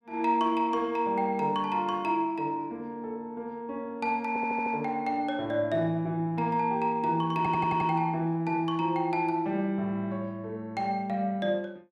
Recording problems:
stutter; at 4.5 s and at 7.5 s

